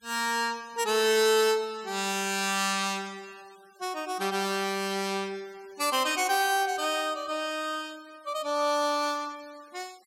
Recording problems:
noise reduction artefacts; signal-to-artefact ratio 24 dB

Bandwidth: 16 kHz